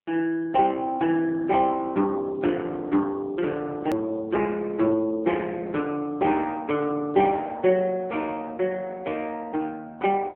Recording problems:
phone line; 240 Hz to 3.4 kHz, AMR-NB
hard cut with a click; at 4 s

